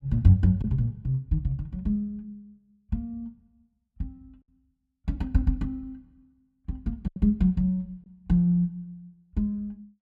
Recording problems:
lost packets; 1.5% of the sound replaced, filled with silence

